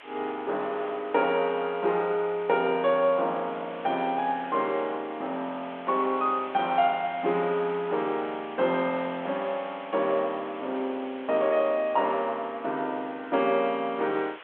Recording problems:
phone line; 300 Hz to 3.8 kHz, G.726
background hiss; SNR 19 dB

